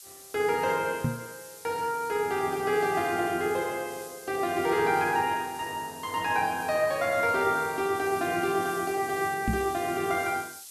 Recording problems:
hiss; SNR 16 dB
knock on the microphone; at 1 s and at 9.5 s; peak +3 dB vs average level

